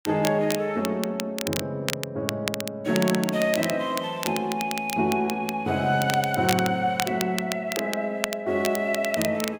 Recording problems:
crackling; vinyl, SNR 8 dB

